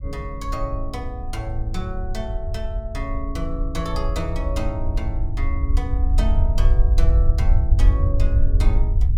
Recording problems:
low-frequency rumble; below 64 Hz, SNR -8 dB

